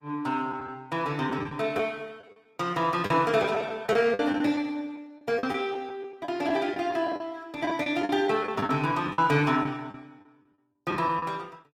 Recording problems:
lossy codec; Opus, log-spectral distance 2 dB, nothing above 20.1 kHz
packet loss; 9% of the sound replaced, filled with the last packet

